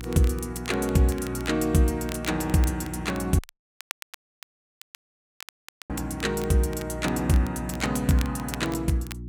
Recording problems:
hum; 60 Hz, harmonics up to 360 Hz, SNR 12 dB
crackling; vinyl, SNR 18 dB
dropout; at 3.5 s for 2.5 s

